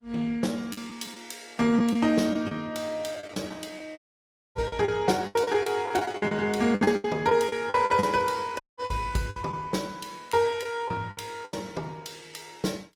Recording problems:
lossy compression; Opus, log-spectral distance 3 dB, nothing above 19 kHz
packet loss; 12% of the sound replaced, filled with the last packet
audio cutting out; at 4 s for 0.5 s and at 8.5 s

